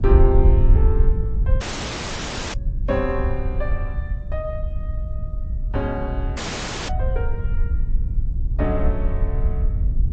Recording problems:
lossy compression; MP3, then G.722, log-spectral distance 3 dB, nothing above 7.3 kHz
low-frequency rumble; below 72 Hz, SNR -5 dB
audio cutting out; at 1.5 s for 1 s and at 6.5 s for 0.5 s

